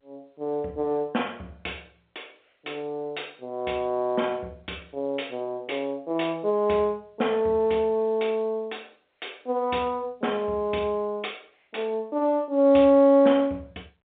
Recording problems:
phone line; 240 Hz to 3.6 kHz, G.711

